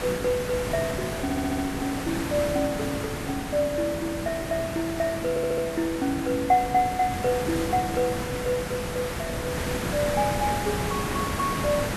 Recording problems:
background hiss; slope -5 dB per octave, SNR 3 dB
stutter; at 1 s and at 5.5 s

